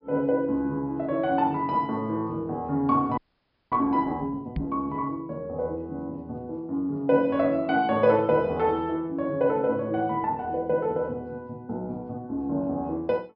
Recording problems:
treble missing; nothing above 5.5 kHz
audio freezing; at 3 s for 0.5 s
knock on the microphone; at 4.5 s; peak 0 dB vs average level

